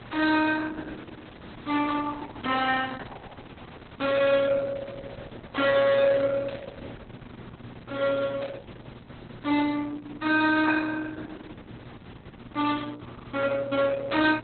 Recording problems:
codec artefacts; Opus, log-spectral distance 6 dB, nothing above 4 kHz
distorted audio; hard clipping, signal-to-distortion ratio 12 dB
hum; 60 Hz, harmonics up to 840 Hz, SNR 23 dB
hiss; SNR 21 dB
burst of static; at 6.5 s and at 8.5 s; peak -14 dB vs average level

